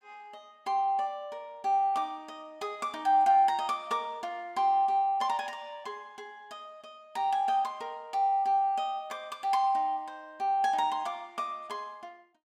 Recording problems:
none

